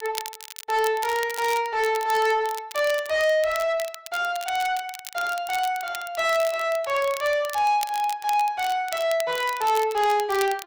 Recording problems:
distorted audio; soft clipping, signal-to-distortion ratio 11 dB
crackling; vinyl, SNR 14 dB

